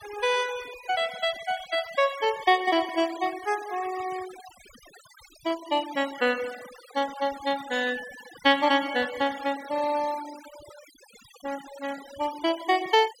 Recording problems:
noise reduction artefacts; signal-to-artefact ratio 17 dB

